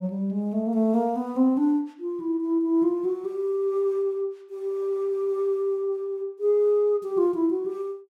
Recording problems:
none

